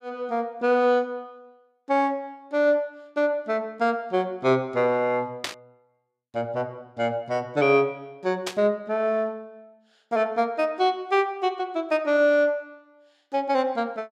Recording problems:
burst of static; at 5.5 s and at 8.5 s; peak 0 dB vs average level

